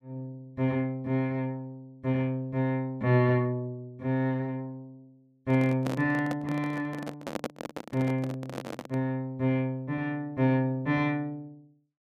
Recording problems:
microphone handling noise; from 5.5 to 9 s; peak 0 dB vs average level

